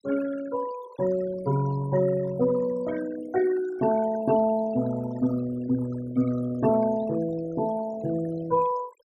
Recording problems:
denoising artefacts; signal-to-artefact ratio 15 dB

